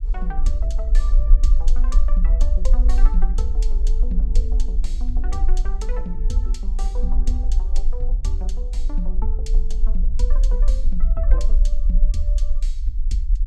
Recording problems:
rumble; below 40 Hz, strongest tone 24 Hz, SNR -11 dB

